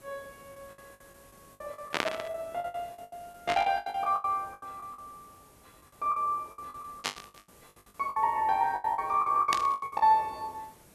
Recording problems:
hiss; slope -5 dB per octave, SNR 27 dB
lost packets; 20% of the sound replaced, filled with the last packet
static burst; 4 times, first at 2 s; peak +5 dB vs average level

